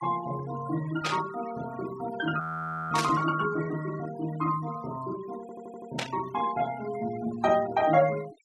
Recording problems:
noise reduction artefacts; signal-to-artefact ratio 15 dB
burst of static; at 1 s, at 3 s and at 6 s; peak +3 dB vs average level
audio freezing; at 2.5 s for 0.5 s
stutter; at 5.5 s

